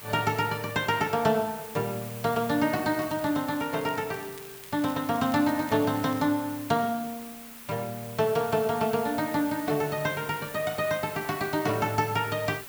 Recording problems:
hiss; slope -1 dB per octave, SNR 14 dB
crackle; from 3 to 6 s; loose cable, SNR 24 dB

